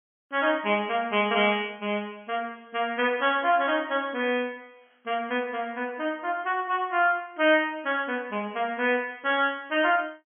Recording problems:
treble cut off; nothing above 3.3 kHz

